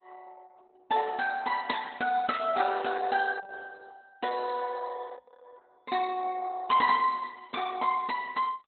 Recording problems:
codec artefacts; Opus, log-spectral distance 4 dB, nothing above 4.1 kHz

